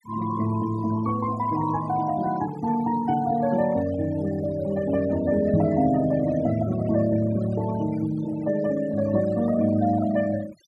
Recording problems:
noise reduction artefacts; signal-to-artefact ratio 16 dB
microphone bump; at 5.5 s; peak +4 dB vs average level

